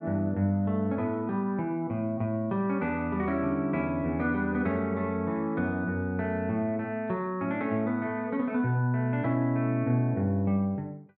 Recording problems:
none

